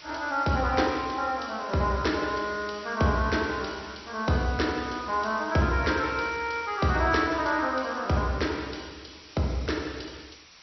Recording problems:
codec artefacts; MP2, log-spectral distance 16 dB, nothing above 5.8 kHz
background hiss; slope +1 dB per octave, SNR 19 dB

